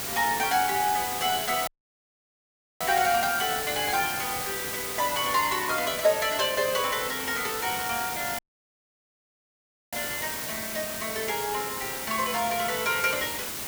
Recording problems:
hiss; slope -2 dB per octave, SNR 4 dB
audio cutting out; at 1.5 s for 1 s and at 8.5 s for 1.5 s

